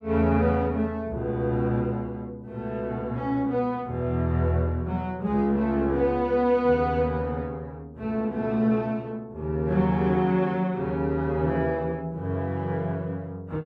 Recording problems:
none

